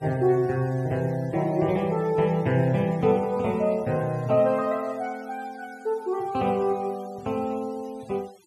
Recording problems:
denoising artefacts; signal-to-artefact ratio 26 dB

